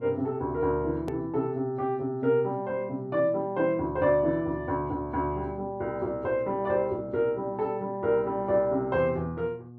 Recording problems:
electrical hum; 60 Hz, harmonics up to 1.1 kHz, SNR 19 dB
hard cut with a click; at 1 s

